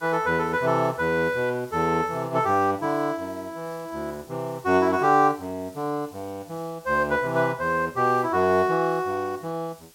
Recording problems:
hiss; slope 0 dB per octave, SNR 26 dB

